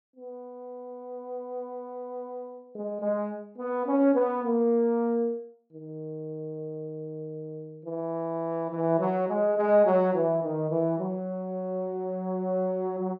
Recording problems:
none

